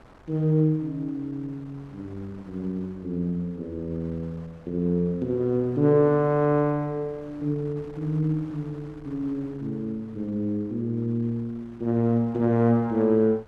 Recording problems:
wind on the microphone; below 1 kHz, SNR 25 dB

